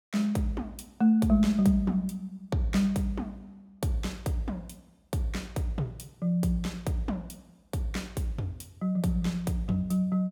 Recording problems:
none

